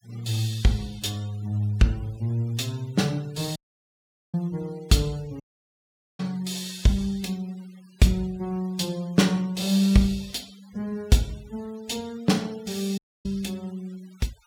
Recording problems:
noise reduction artefacts; signal-to-artefact ratio 24 dB
dropout; at 3.5 s for 1 s, at 5.5 s for 1 s and at 13 s

